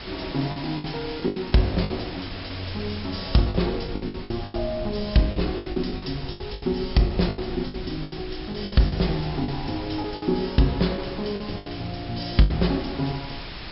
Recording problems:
treble missing; nothing above 5.4 kHz
background hiss; slope -1 dB per octave, SNR 13 dB
low-frequency rumble; below 100 Hz, SNR 14 dB
packet loss; 13% of the sound replaced, filled with the last packet

